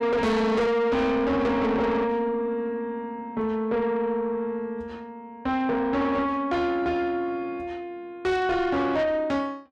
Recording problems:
distorted audio; soft clipping, signal-to-distortion ratio 7 dB

